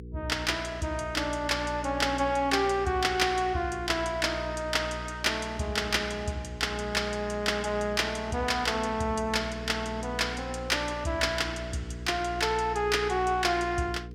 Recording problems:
hum; 60 Hz, harmonics up to 480 Hz, SNR 12 dB

